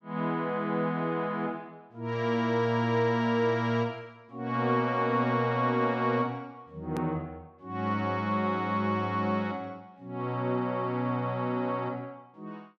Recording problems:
edit click; at 7 s

